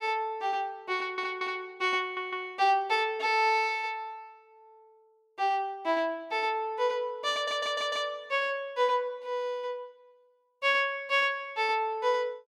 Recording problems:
audio stuttering; at 1 s, at 2 s and at 7.5 s

